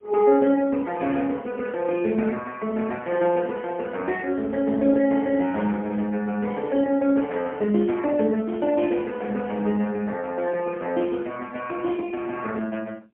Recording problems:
phone line; 240 Hz to 3.1 kHz, AMR-NB, then MP3

